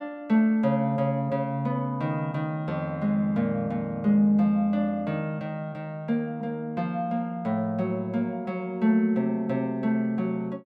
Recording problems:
none

